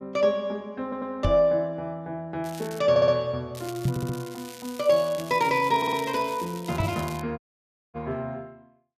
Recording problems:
stutter; 4 times, first at 1 s
knock on the microphone; at 1.5 s, at 4 s and at 7 s; peak +5 dB vs average level
crackle; at 2.5 s and from 3.5 to 7 s; loose cable, SNR 17 dB
dropout; at 7.5 s for 0.5 s

